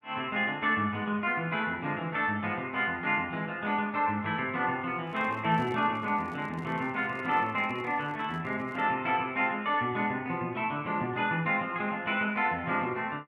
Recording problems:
microphone handling noise; from 5 to 9 s; peak -10 dB vs average level

